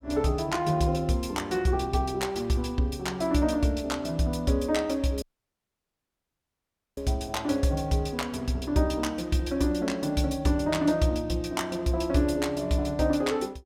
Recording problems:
audio cutting out; at 5 s for 2 s

